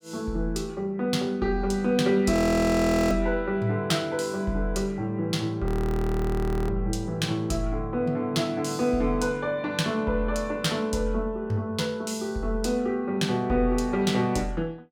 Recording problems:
audio freezing; at 2.5 s for 1 s and at 5.5 s for 1 s

